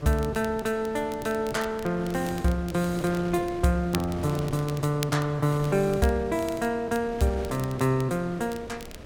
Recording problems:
wind on the microphone; below 640 Hz, SNR 14 dB
crackling; vinyl, SNR 18 dB

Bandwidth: 17.5 kHz